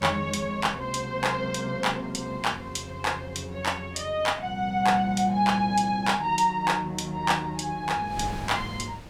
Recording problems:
wind noise; below 640 Hz, SNR 19 dB

